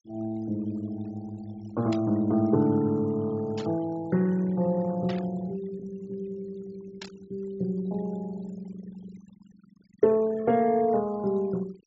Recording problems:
low-pass filter; nothing above 7.6 kHz
denoising artefacts; signal-to-artefact ratio 23 dB
burst of static; 4 times, first at 2 s; peak -8 dB vs average level

